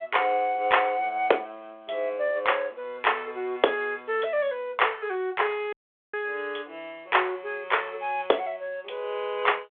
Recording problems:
telephone audio; 320 Hz to 3.5 kHz, G.726
dropout; at 5.5 s

